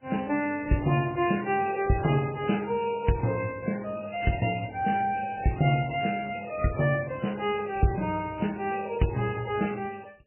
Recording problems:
lossy codec; AAC, then MP3, log-spectral distance 9 dB, nothing above 2.4 kHz

